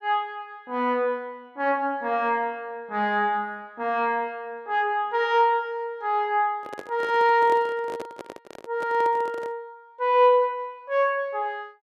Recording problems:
microphone handling noise; from 6.5 to 9.5 s; peak -7 dB vs average level

